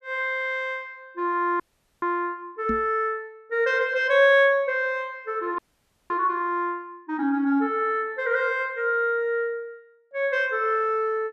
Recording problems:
frozen audio; at 1.5 s and at 5.5 s for 0.5 s
microphone bump; at 2.5 s; peak -2 dB vs average level

